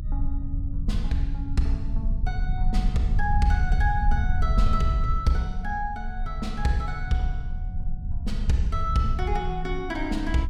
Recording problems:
low-frequency rumble; below 68 Hz, SNR 0 dB

